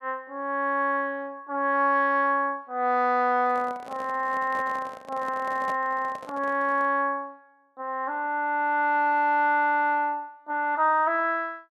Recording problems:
handling noise; from 3.5 to 7 s; peak -8 dB vs average level

